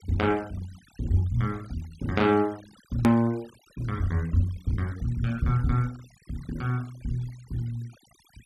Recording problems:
denoising artefacts; signal-to-artefact ratio 24 dB
click at an edit; at 3 s

